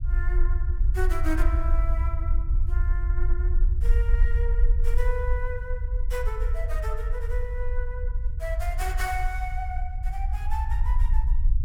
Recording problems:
low-frequency rumble; below 56 Hz, SNR -8 dB

